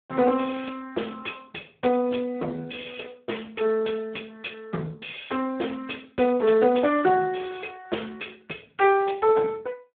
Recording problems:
telephone audio; 240 Hz to 3.6 kHz, Speex

